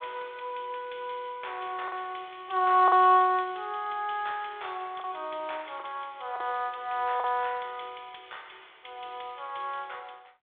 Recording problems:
telephone audio; 320 Hz to 3.7 kHz, G.726
lost packets; 2% of the sound replaced, filled with the last packet

